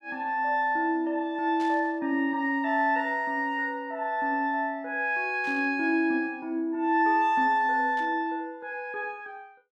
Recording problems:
static burst; at 1.5 s, at 5.5 s and at 8 s; peak -14 dB vs average level

